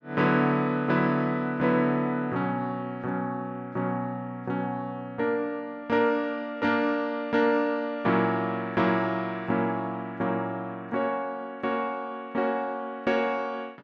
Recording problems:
none

